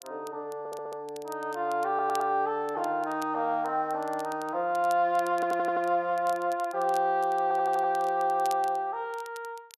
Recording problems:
crackle; vinyl, SNR 22 dB
audio stuttering; 4 times, first at 0.5 s

